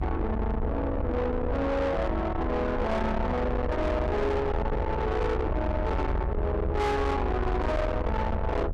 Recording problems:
distortion; soft clipping, signal-to-distortion ratio 7 dB
low-frequency rumble; below 490 Hz, SNR 3 dB

